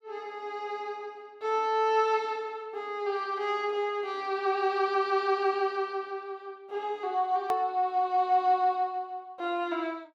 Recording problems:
click at an edit; at 7.5 s

